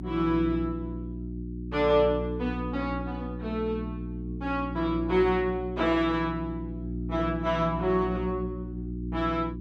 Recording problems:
hum; 60 Hz, harmonics up to 360 Hz, SNR 7 dB

